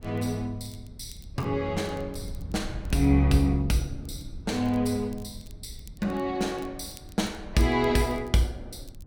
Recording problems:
rumble; below 110 Hz, SNR 15 dB
crackle; vinyl, SNR 28 dB

